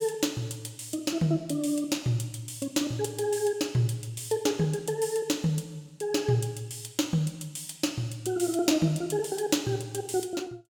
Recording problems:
none

